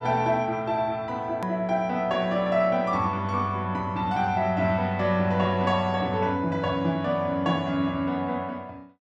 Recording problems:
edit click; at 1.5 s

